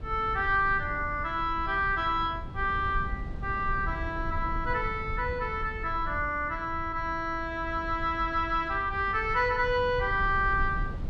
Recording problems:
rumble; below 98 Hz, SNR 10 dB

